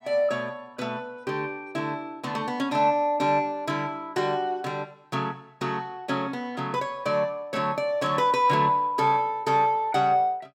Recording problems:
none

